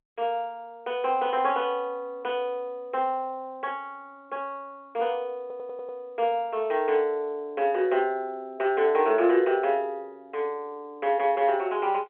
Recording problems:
telephone audio; 260 Hz to 3.3 kHz, G.711
stutter; at 5.5 s

